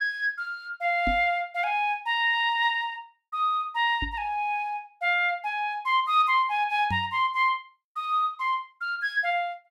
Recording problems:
microphone bump; at 1 s, at 4 s and at 7 s; peak -3 dB vs average level

